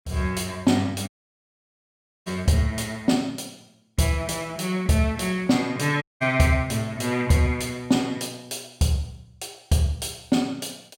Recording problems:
audio cutting out; at 1 s for 1 s and at 6 s

